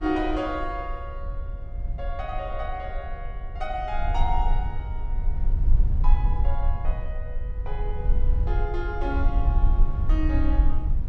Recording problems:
low-frequency rumble; below 54 Hz, strongest tone 20 Hz, SNR -5 dB

